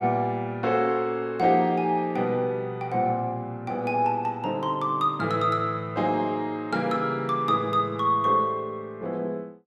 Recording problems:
none

